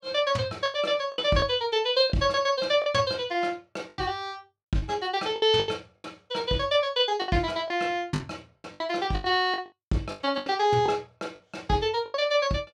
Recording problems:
lost packets; 10% of the sound replaced, filled with the last packet

